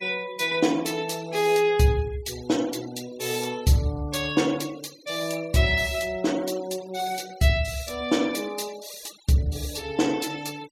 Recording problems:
denoising artefacts; signal-to-artefact ratio 19 dB

